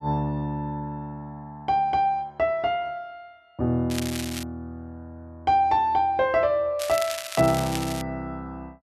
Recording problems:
crackling; at 4 s and from 7 to 8 s; loose cable, SNR 9 dB

